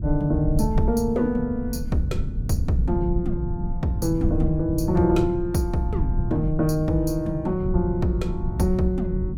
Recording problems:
low-frequency rumble; below 110 Hz, SNR 5 dB

